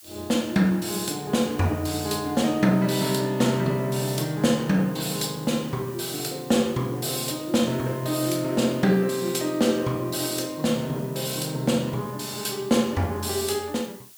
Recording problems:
background hiss; slope +3 dB per octave, SNR 21 dB

